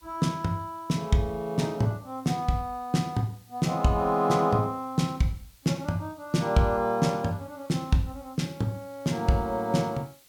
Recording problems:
background hiss; slope +1 dB per octave, SNR 28 dB

